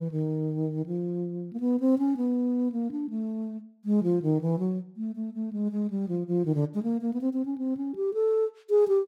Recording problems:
none

